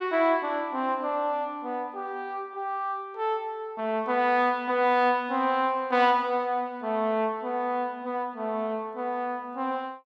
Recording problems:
none

